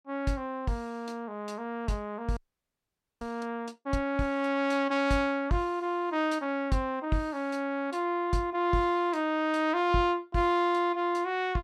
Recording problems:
frozen audio; at 2.5 s for 1 s

